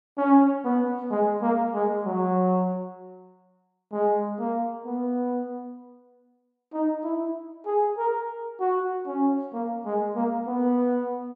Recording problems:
none

